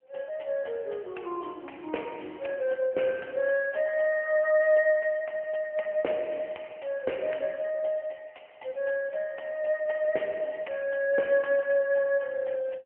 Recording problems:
telephone audio; 280 Hz to 3.1 kHz, AMR-NB

